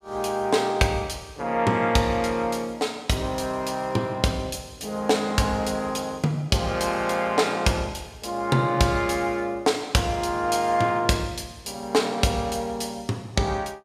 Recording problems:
none

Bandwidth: 15.5 kHz